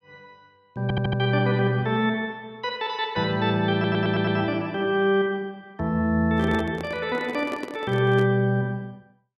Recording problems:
audio stuttering; at 1 s and at 3.5 s
handling noise; from 6.5 to 8.5 s; peak -5 dB vs average level

